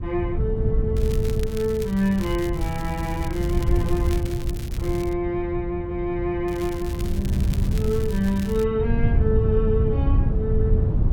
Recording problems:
wind noise; below 110 Hz, SNR -1 dB
crackling; from 1 to 5 s and from 6.5 to 8.5 s; loose cable, SNR 15 dB

